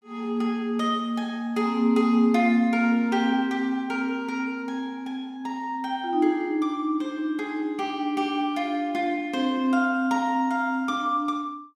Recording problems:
none

